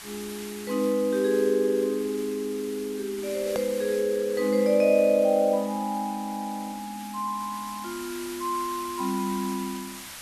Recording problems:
background hiss; SNR 14 dB
click at an edit; at 3.5 s

